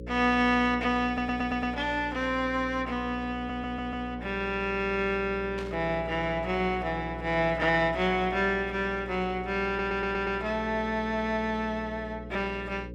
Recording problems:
hum; 60 Hz, harmonics up to 540 Hz, SNR 13 dB
audio stuttering; at 1 s, at 3.5 s and at 9.5 s
burst of static; at 5.5 s; peak -10 dB vs average level

